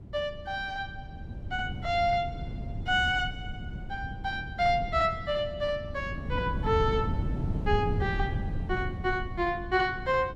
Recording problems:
wind on the microphone; below 160 Hz, SNR 6 dB

